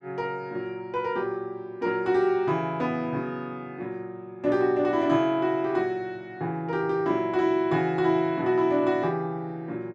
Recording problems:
none

